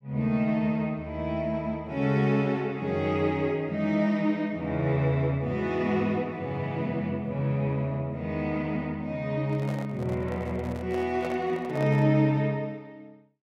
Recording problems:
handling noise; from 9.5 to 12 s; peak -6 dB vs average level

